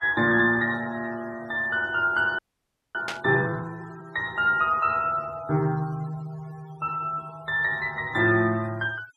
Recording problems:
noise reduction artefacts; signal-to-artefact ratio 23 dB
audio freezing; at 2.5 s for 0.5 s
static burst; at 3 s; peak -2 dB vs average level

